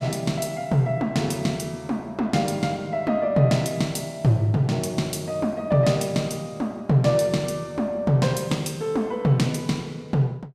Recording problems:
none

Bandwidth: 15 kHz